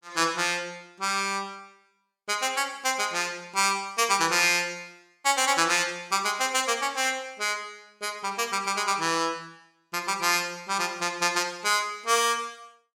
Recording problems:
none

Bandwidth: 17 kHz